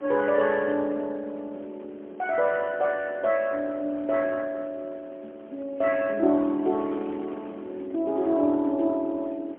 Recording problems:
phone line; 240 Hz to 3.5 kHz, AMR-NB, then MP3
wind noise; below 840 Hz, SNR 21 dB

